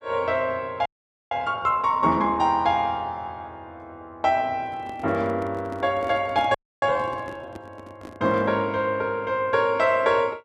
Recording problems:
frozen audio; at 1 s and at 6.5 s
handling noise; from 4.5 to 8.5 s; peak -7 dB vs average level

